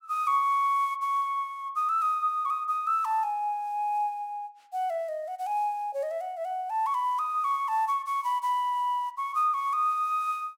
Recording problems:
none

